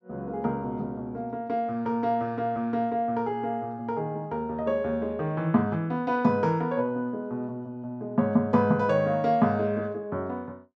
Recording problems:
none

